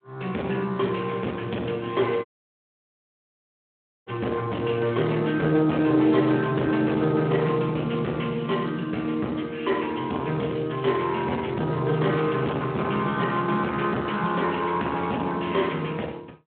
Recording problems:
telephone audio; 170 Hz to 3.6 kHz, Speex
distortion; soft clipping, signal-to-distortion ratio 10 dB
dropout; at 2.5 s for 2 s

